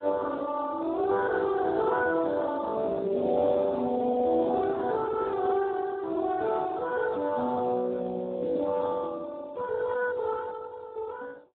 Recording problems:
phone line; 260 Hz to 2.2 kHz, Speex

